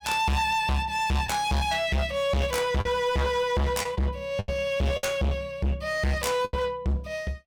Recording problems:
distortion; hard clipping, uneven, signal-to-distortion ratio 6 dB
packet loss; 4% of the sound replaced, filled with the last packet

